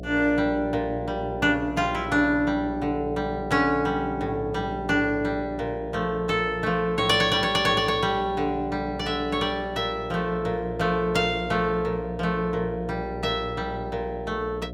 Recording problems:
electrical hum; 60 Hz, harmonics up to 720 Hz, SNR 12 dB

